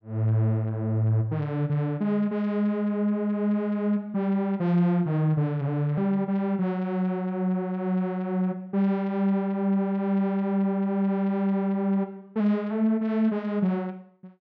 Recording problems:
none

